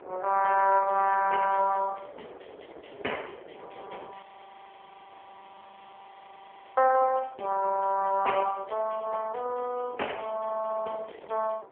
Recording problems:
phone line; 320 Hz to 2.9 kHz, AMR-NB
wind on the microphone; below 730 Hz, SNR 21 dB
frozen audio; at 4 s for 2.5 s

